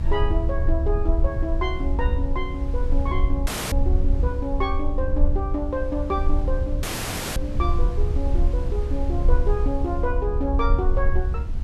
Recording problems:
low-frequency rumble; below 68 Hz, strongest tone 22 Hz, SNR -3 dB
wind noise; below 1.7 kHz, SNR 20 dB
audio cutting out; at 3.5 s and at 7 s for 0.5 s

